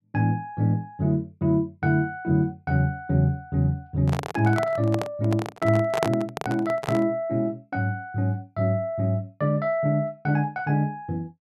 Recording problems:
handling noise; from 4 to 7 s; peak +4 dB vs average level

